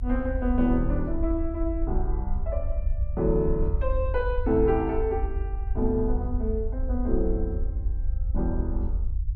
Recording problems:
rumble; below 66 Hz, SNR 2 dB

